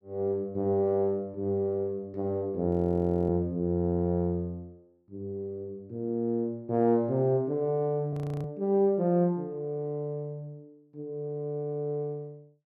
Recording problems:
audio freezing; at 2.5 s for 0.5 s and at 8 s

